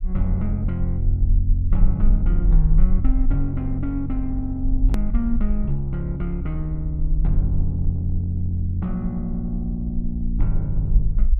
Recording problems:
low-frequency rumble; below 44 Hz, SNR 0 dB
hard cut with a click; at 5 s

